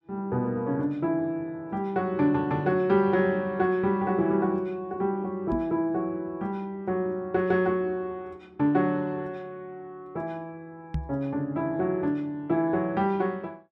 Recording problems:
microphone thump; at 5.5 s and at 11 s; peak +1 dB vs average level

